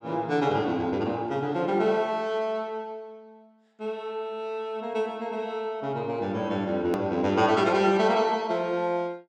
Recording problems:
edit click; at 7 s

